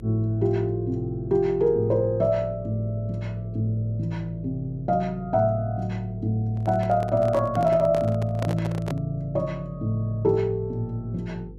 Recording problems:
electrical hum; 50 Hz, harmonics up to 500 Hz, SNR 18 dB
handling noise; from 6.5 to 9 s; peak -2 dB vs average level

